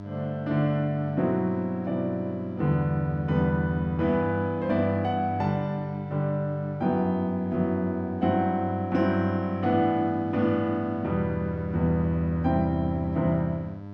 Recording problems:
electrical hum; 50 Hz, harmonics up to 1.3 kHz, SNR 14 dB

